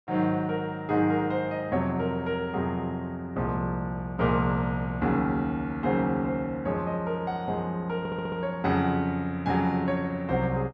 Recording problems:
stutter; at 8 s

